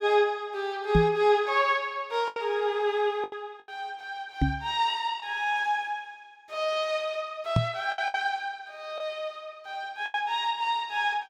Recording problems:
lost packets; 4% of the sound replaced, filled with the last packet
microphone thump; at 1 s, at 4.5 s and at 7.5 s; peak +8 dB vs average level

